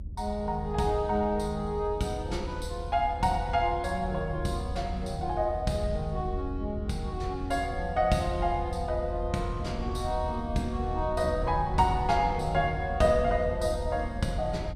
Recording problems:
low-frequency rumble; below 82 Hz, SNR 8 dB

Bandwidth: 14.5 kHz